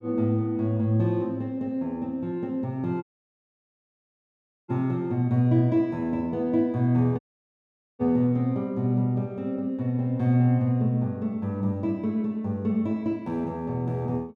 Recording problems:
dropout; at 3 s for 1.5 s and at 7 s for 1 s

